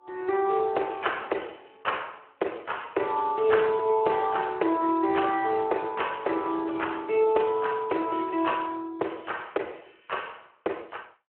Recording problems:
telephone audio; 280 Hz to 3.1 kHz, Speex

